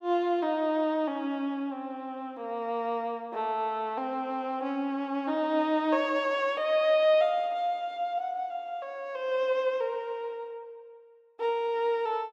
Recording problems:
none

